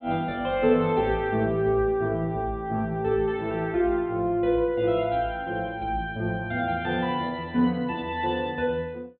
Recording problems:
low-pass filter; nothing above 4 kHz

